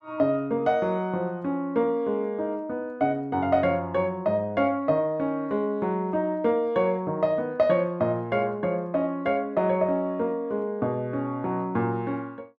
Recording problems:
none

